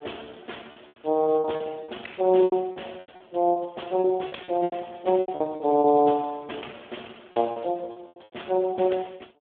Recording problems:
phone line; 260 Hz to 3.5 kHz, Speex
lost packets; 12% of the sound replaced, filled with repeated pitch periods

